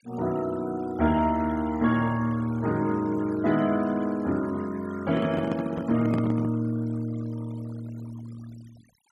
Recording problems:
noise reduction artefacts; signal-to-artefact ratio 20 dB
handling noise; from 5 to 6.5 s; peak +1 dB vs average level

